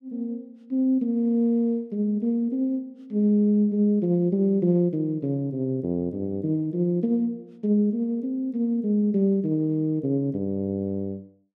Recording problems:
none

